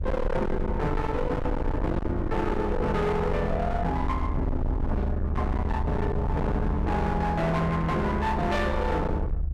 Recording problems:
distortion; hard clipping, uneven, signal-to-distortion ratio 7 dB
rumble; below 130 Hz, SNR 3 dB

